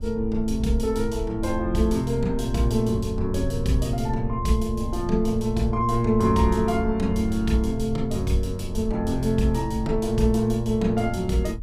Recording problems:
wind noise; below 60 Hz, SNR 10 dB

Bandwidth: 15.5 kHz